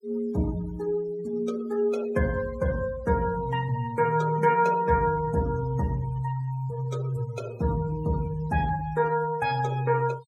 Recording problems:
noise reduction artefacts; signal-to-artefact ratio 19 dB

